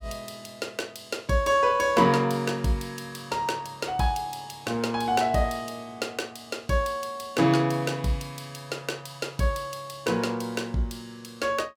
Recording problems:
none

